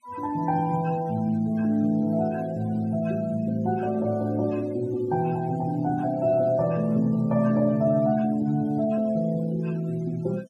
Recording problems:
noise reduction artefacts; signal-to-artefact ratio 25 dB

